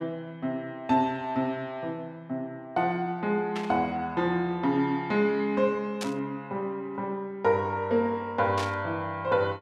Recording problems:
burst of static; at 3.5 s, at 6 s and at 8.5 s; peak -2 dB vs average level

